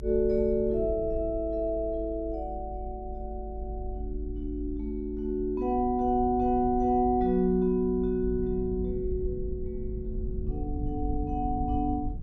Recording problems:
rumble; below 70 Hz, SNR 9 dB

